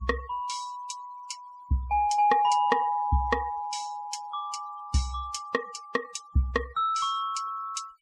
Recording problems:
denoising artefacts; signal-to-artefact ratio 21 dB

